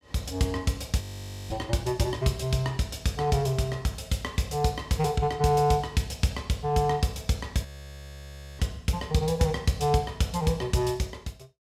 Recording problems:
frozen audio; at 1 s and at 7.5 s for 1 s

